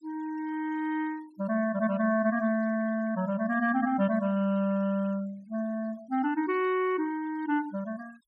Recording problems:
noise reduction artefacts; signal-to-artefact ratio 26 dB

